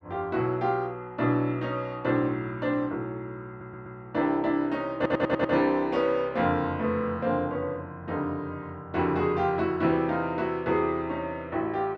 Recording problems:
stutter; at 3.5 s and at 5 s

